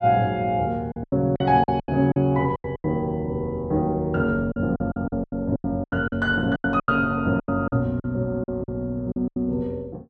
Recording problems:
lost packets; 14% of the sound replaced, filled with silence

